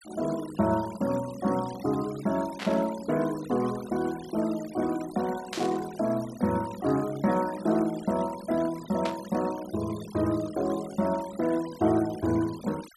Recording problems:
noise reduction artefacts; signal-to-artefact ratio 17 dB
burst of static; at 2.5 s, at 5.5 s and at 9 s; peak -2 dB vs average level

